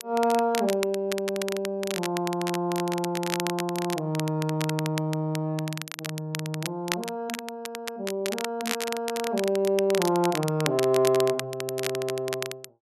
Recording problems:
crackling; vinyl, SNR 7 dB

